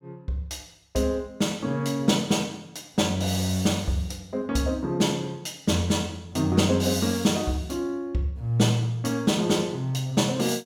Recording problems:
none

